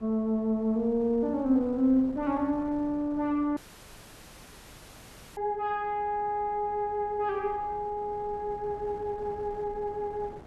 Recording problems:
wind noise; below 500 Hz, SNR 20 dB
audio cutting out; at 3.5 s for 2 s

